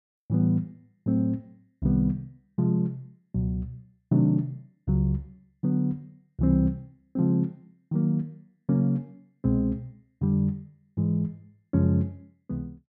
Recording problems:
none

